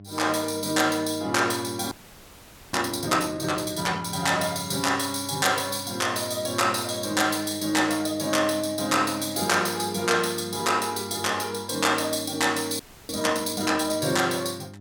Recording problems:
electrical hum; 50 Hz, harmonics up to 700 Hz, SNR 20 dB
frozen audio; at 2 s for 1 s and at 13 s

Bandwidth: 17.5 kHz